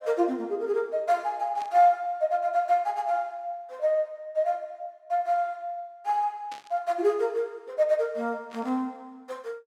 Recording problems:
static burst; at 1.5 s, at 6.5 s and at 8.5 s; peak -13 dB vs average level

